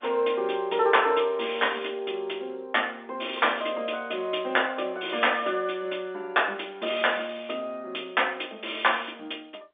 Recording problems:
phone line; 220 Hz to 3.6 kHz, G.711

